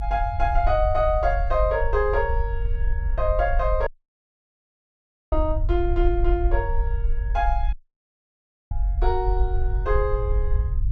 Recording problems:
low-frequency rumble; below 54 Hz, SNR 1 dB
audio cutting out; at 4 s for 1.5 s and at 7.5 s for 1 s

